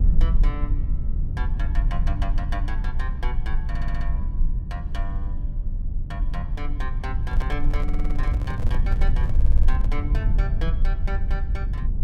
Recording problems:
low-frequency rumble; below 54 Hz, strongest tone 22 Hz, SNR -11 dB
audio stuttering; at 3.5 s, at 8 s and at 9.5 s
handling noise; from 7.5 to 10 s; peak +1 dB vs average level

